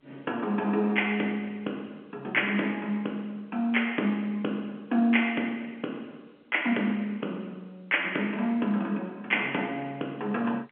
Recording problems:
phone line; 240 Hz to 3.9 kHz, G.711

